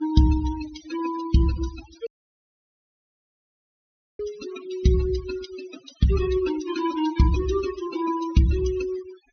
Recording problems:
treble missing; nothing above 6.2 kHz
denoising artefacts; signal-to-artefact ratio 13 dB
audio cutting out; at 2 s for 2 s

